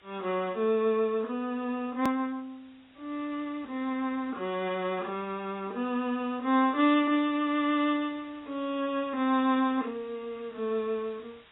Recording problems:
lossy codec; AAC, log-spectral distance 6 dB, nothing above 3.6 kHz
hiss; SNR 27 dB
hard cut with a click; at 2 s

